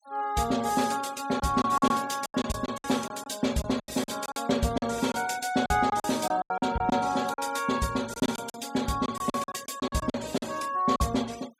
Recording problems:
noise reduction artefacts; signal-to-artefact ratio 19 dB
packet loss; 12% of the sound replaced, filled with silence

